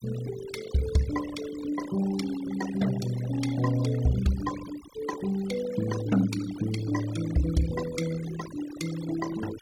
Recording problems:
denoising artefacts; signal-to-artefact ratio 13 dB

